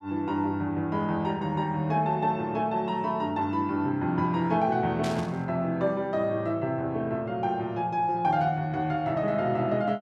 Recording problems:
burst of static; at 5 s; peak -7 dB vs average level

